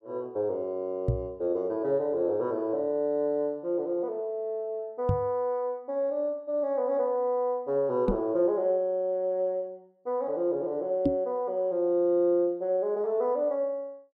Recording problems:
knock on the microphone; 4 times, first at 1 s; peak +6 dB vs average level

